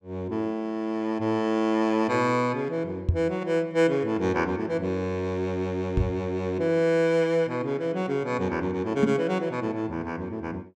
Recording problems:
microphone thump; at 3 s, at 6 s and at 9 s; peak +7 dB vs average level

